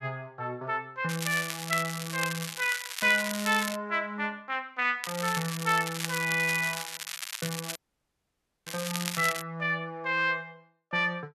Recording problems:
crackle; from 1 to 4 s and from 5 to 9.5 s; loose cable, SNR 6 dB
dropout; at 8 s for 1 s

